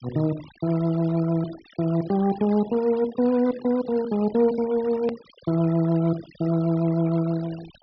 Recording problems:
treble missing; nothing above 5.5 kHz
noise reduction artefacts; signal-to-artefact ratio 20 dB
hard cut with a click; at 5 s

